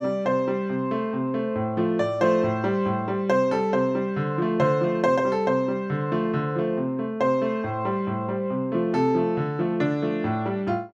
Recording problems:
none

